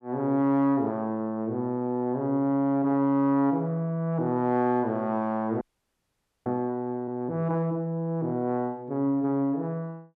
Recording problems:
audio freezing; at 5.5 s for 1 s

